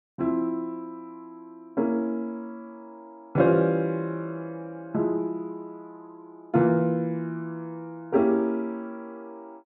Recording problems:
none

